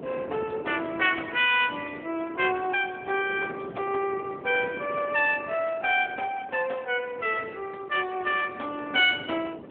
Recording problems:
telephone audio; 340 Hz to 3.4 kHz, AMR-NB
wind on the microphone; below 570 Hz, SNR 15 dB

